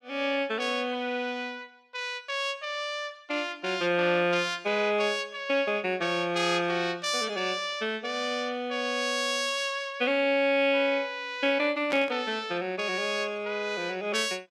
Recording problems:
static burst; at 12 s; peak -3 dB vs average level

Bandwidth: 14.5 kHz